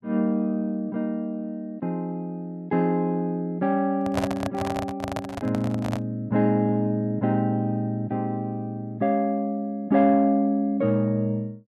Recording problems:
microphone handling noise; from 4 to 6 s; peak +2 dB vs average level

